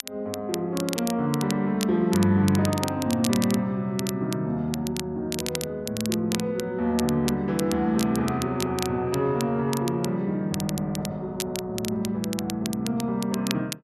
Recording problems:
crackle; vinyl, SNR 10 dB

